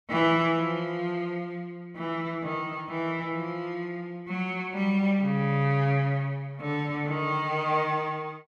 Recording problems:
none

